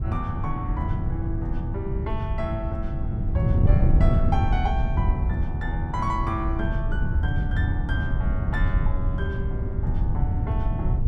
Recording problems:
wind on the microphone; below 120 Hz, SNR -7 dB

